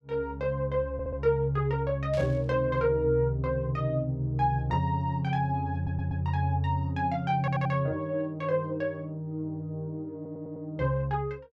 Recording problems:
stutter; 4 times, first at 1 s
burst of static; at 2 s; peak -12 dB vs average level

